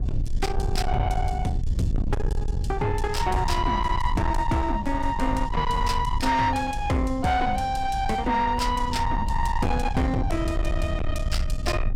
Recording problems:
distorted audio; soft clipping, signal-to-distortion ratio 8 dB
rumble; below 100 Hz, SNR 4 dB

